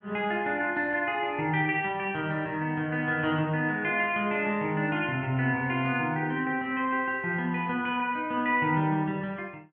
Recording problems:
none

